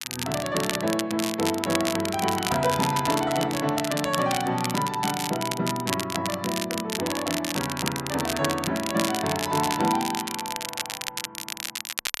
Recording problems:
crackle; vinyl, SNR 4 dB

